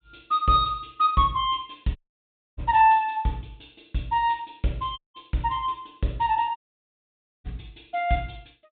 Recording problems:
treble missing; nothing above 4 kHz
audio cutting out; at 2 s for 0.5 s, at 5 s and at 6.5 s for 1 s

